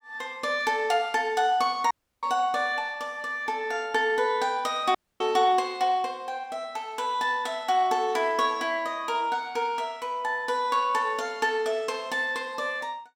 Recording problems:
audio cutting out; at 2 s and at 5 s

